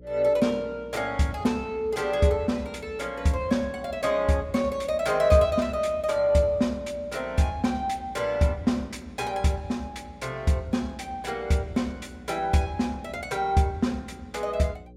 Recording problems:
hum; 60 Hz, harmonics up to 540 Hz, SNR 22 dB

